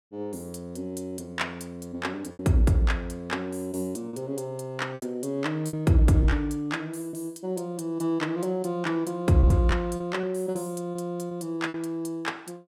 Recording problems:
lost packets; 5% of the sound replaced, filled with repeated pitch periods

